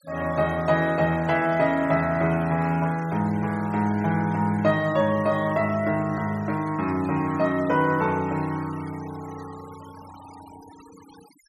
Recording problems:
noise reduction artefacts; signal-to-artefact ratio 22 dB

